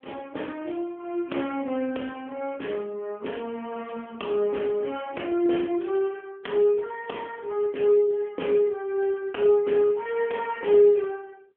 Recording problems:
phone line; 220 Hz to 3.3 kHz, AMR-NB

